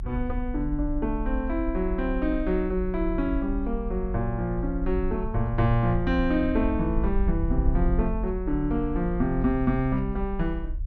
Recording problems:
low-frequency rumble; below 58 Hz, SNR 5 dB

